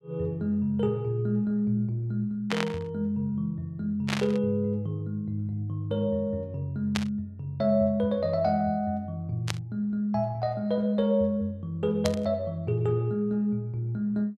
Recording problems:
static burst; 5 times, first at 2.5 s; peak +2 dB vs average level

